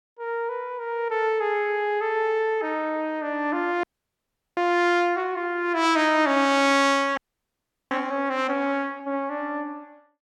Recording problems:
frozen audio; at 4 s for 0.5 s and at 7 s for 0.5 s

